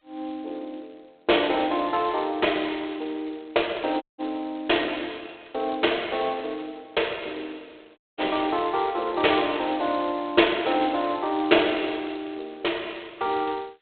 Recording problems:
telephone audio; 260 Hz to 3.5 kHz, G.726
audio cutting out; at 4 s and at 8 s

